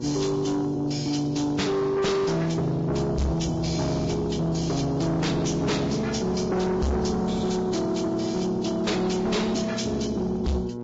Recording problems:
lossy codec; Vorbis, log-spectral distance 4 dB, nothing above 7.3 kHz
distortion; soft clipping, signal-to-distortion ratio 7 dB
hum; 60 Hz, harmonics up to 1.1 kHz, SNR 10 dB

